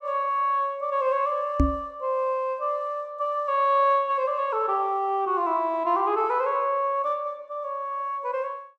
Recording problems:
microphone bump; at 1.5 s; peak +7 dB vs average level

